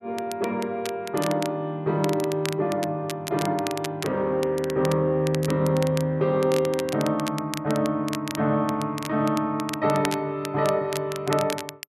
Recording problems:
crackle; vinyl, SNR 12 dB

